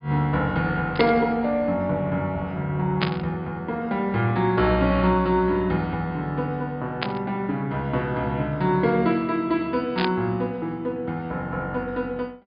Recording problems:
treble missing; nothing above 5.1 kHz
static burst; 4 times, first at 1 s; peak +4 dB vs average level

